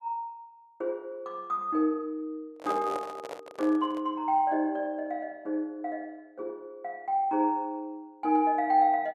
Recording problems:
microphone handling noise; from 2.5 to 4 s; peak -3 dB vs average level

